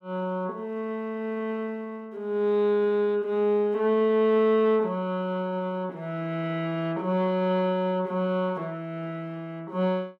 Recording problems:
none

